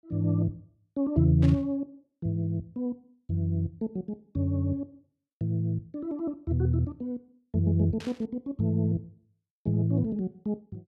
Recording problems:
static burst; at 1.5 s and at 8 s; peak -10 dB vs average level

